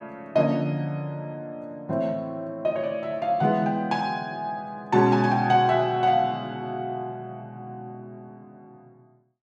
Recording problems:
none

